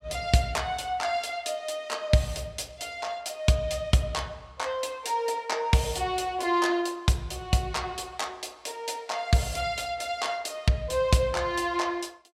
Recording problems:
none

